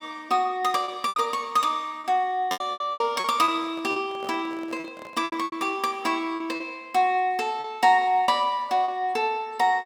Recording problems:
lost packets; 9% of the sound replaced, filled with repeated pitch periods
microphone handling noise; from 3.5 to 5.5 s; peak -12 dB vs average level

